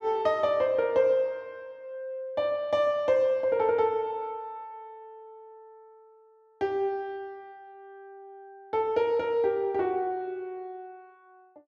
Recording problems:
none

